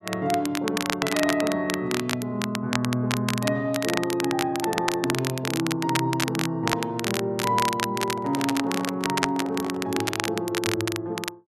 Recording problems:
crackling; vinyl, SNR 4 dB
handling noise; from 8 to 10 s; peak -3 dB vs average level

